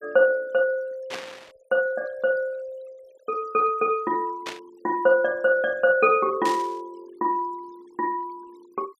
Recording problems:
noise reduction artefacts; signal-to-artefact ratio 28 dB
static burst; at 1 s, at 4.5 s and at 6.5 s; peak -5 dB vs average level

